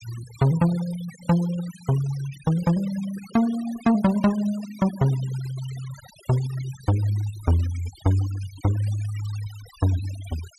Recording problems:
noise reduction artefacts; signal-to-artefact ratio 18 dB

